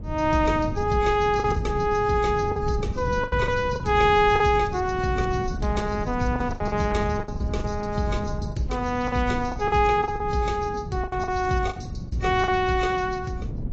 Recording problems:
lossy codec; AAC, log-spectral distance 3 dB, nothing above 7.3 kHz
wind on the microphone; below 170 Hz, SNR 9 dB
lost packets; 9% of the sound replaced, filled with the last packet

